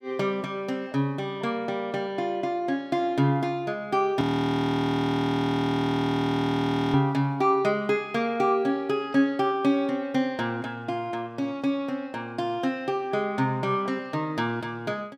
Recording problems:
audio freezing; at 4 s for 2.5 s

